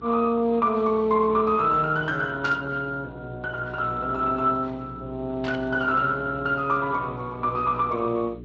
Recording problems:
codec artefacts; Speex, log-spectral distance 2 dB
hum; 60 Hz, harmonics up to 420 Hz, SNR 18 dB
static burst; at 2.5 s and at 5.5 s; peak -8 dB vs average level

